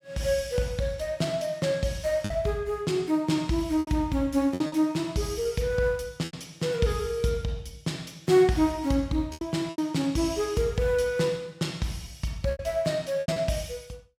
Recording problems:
lost packets; 5% of the sound replaced, filled with repeated pitch periods

